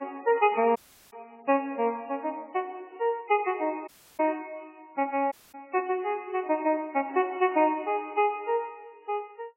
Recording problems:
lossy compression; MP3, log-spectral distance 3 dB, nothing above 2.6 kHz
audio cutting out; at 1 s, at 4 s and at 5.5 s

